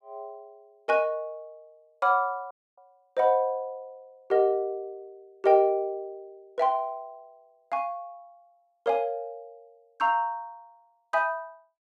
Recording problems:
audio cutting out; at 2.5 s

